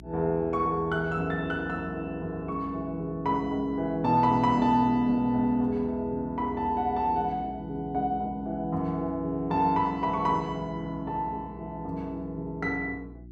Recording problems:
hum; 60 Hz, harmonics up to 360 Hz, SNR 19 dB

